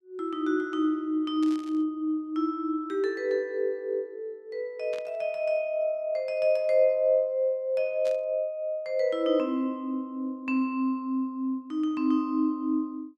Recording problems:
static burst; at 1.5 s, at 5 s and at 8 s; peak -13 dB vs average level

